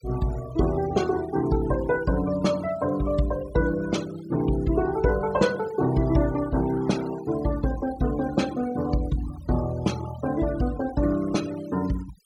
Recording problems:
noise reduction artefacts; signal-to-artefact ratio 17 dB

